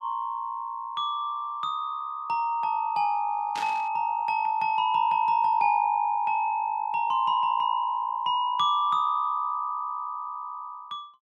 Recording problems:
burst of static; at 3.5 s; peak -6 dB vs average level

